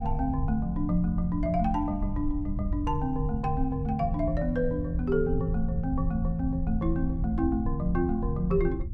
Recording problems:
rumble; below 86 Hz, SNR 5 dB

